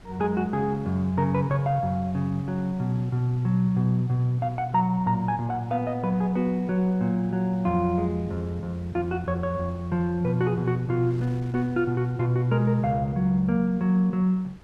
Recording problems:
wind on the microphone; below 510 Hz, SNR 24 dB

